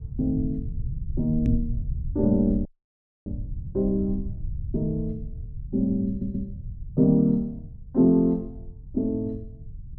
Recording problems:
low-frequency rumble; below 100 Hz, SNR 11 dB
knock on the microphone; at 1.5 s; peak +5 dB vs average level
dropout; at 2.5 s for 0.5 s
stutter; at 6 s

